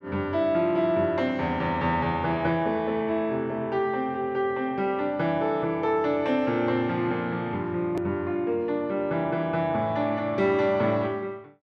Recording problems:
hard cut with a click; at 8 s

